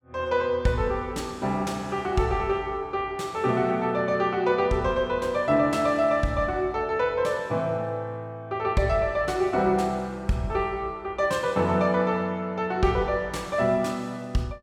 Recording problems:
none

